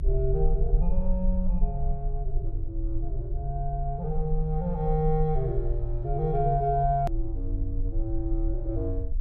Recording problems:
rumble; below 46 Hz, SNR 2 dB
hard cut with a click; at 7 s

